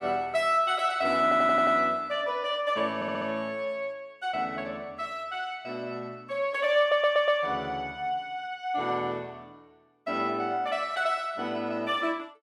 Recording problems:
stutter; at 1 s, at 3 s and at 7 s

